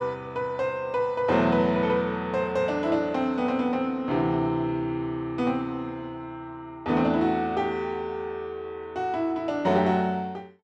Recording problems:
none

